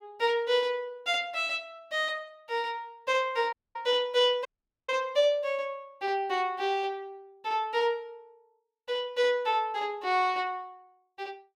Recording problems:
dropout; at 3.5 s and at 4.5 s

